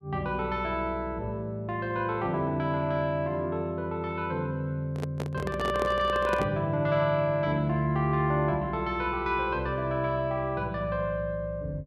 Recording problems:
handling noise; from 5 to 6.5 s; peak +1 dB vs average level

